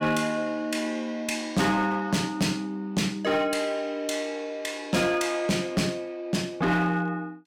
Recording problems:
distortion; hard clipping, uneven, signal-to-distortion ratio 12 dB

